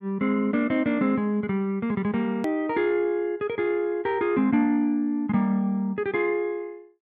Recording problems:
click at an edit; at 2.5 s

